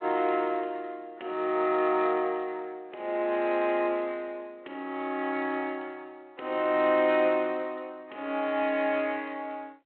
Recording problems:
telephone audio; 280 Hz to 3.9 kHz, G.726

